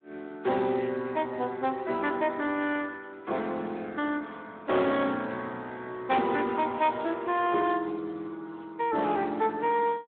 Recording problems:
phone line; 220 Hz to 3.7 kHz, Speex
distortion; hard clipping, signal-to-distortion ratio 13 dB

